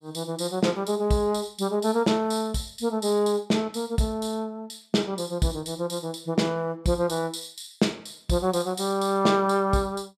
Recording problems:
none

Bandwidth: 14.5 kHz